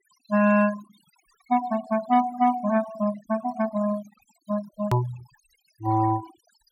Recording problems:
noise reduction artefacts; signal-to-artefact ratio 18 dB
hard cut with a click; at 5 s

